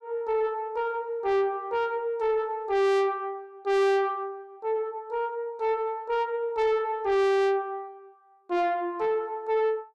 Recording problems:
distortion; soft clipping, signal-to-distortion ratio 7 dB

